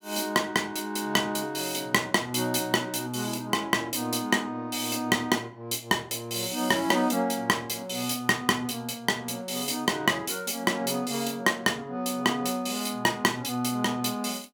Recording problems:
none

